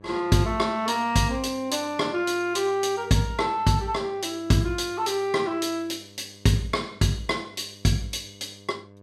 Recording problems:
hum; 50 Hz, harmonics up to 1.2 kHz, SNR 25 dB

